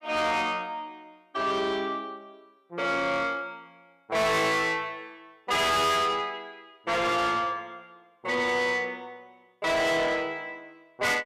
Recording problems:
distorted audio; soft clipping, signal-to-distortion ratio 6 dB

